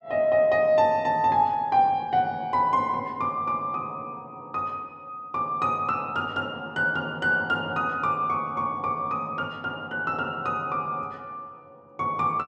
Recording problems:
none

